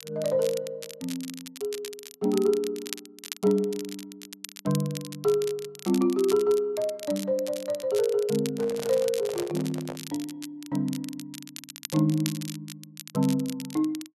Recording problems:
crackling; vinyl, SNR 13 dB
handling noise; from 8.5 to 10 s; peak -6 dB vs average level

